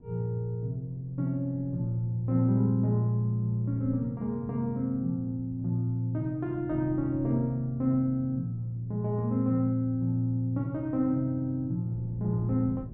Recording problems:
wind on the microphone; below 200 Hz, SNR 20 dB

